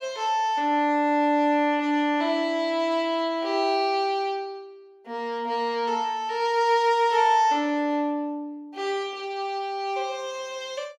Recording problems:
none

